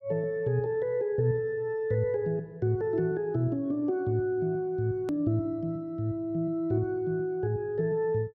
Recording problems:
hard cut with a click; at 5 s

